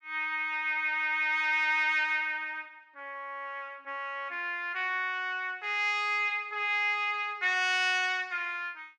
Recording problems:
none

